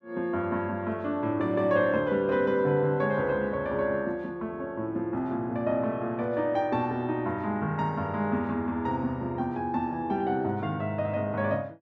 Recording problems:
none

